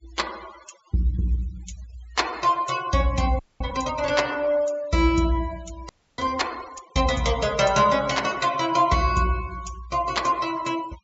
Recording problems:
treble cut off; nothing above 8 kHz
noise reduction artefacts; signal-to-artefact ratio 19 dB
frozen audio; at 3.5 s and at 6 s

